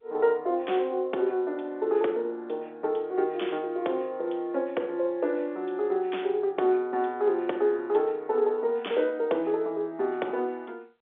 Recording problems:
telephone audio; 260 Hz to 3.6 kHz, G.711

